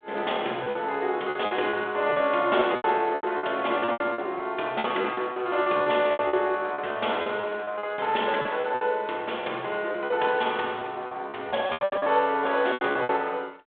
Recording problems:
telephone audio; 320 Hz to 3.6 kHz, G.726
packet loss; 15% of the sound replaced, filled with repeated pitch periods

